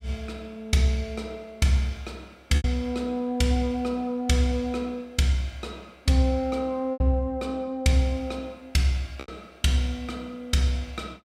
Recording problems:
packet loss; 2% of the sound replaced, filled with repeated pitch periods

